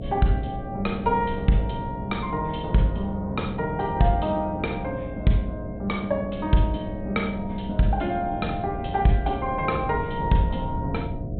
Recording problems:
treble missing; nothing above 4 kHz
hum; 60 Hz, harmonics up to 720 Hz, SNR 11 dB
wind on the microphone; below 150 Hz, SNR 11 dB

